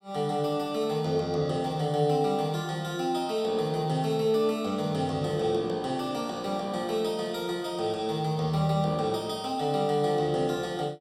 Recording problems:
none

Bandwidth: 16 kHz